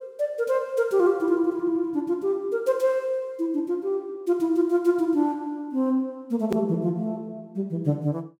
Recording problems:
edit click; at 6.5 s

